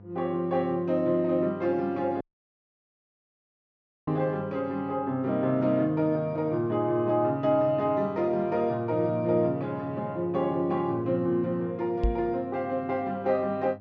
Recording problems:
treble missing; nothing above 8 kHz
electrical hum; 50 Hz, harmonics up to 1 kHz, SNR 22 dB
dropout; at 2 s for 2 s
microphone thump; at 12 s; peak +3 dB vs average level

